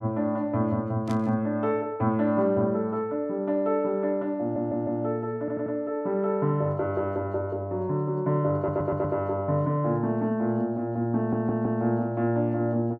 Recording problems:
static burst; at 1 s; peak -12 dB vs average level
audio stuttering; 4 times, first at 4.5 s

